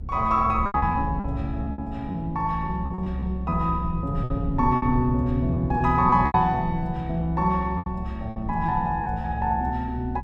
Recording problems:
low-frequency rumble; below 120 Hz, SNR 7 dB
packet loss; 9% of the sound replaced, filled with repeated pitch periods

